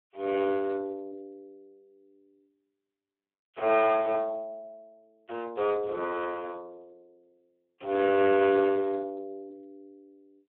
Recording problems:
phone line; 340 Hz to 3.1 kHz, Speex

